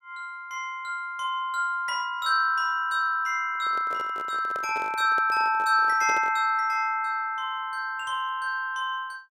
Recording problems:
handling noise; from 3.5 to 6.5 s; peak -8 dB vs average level

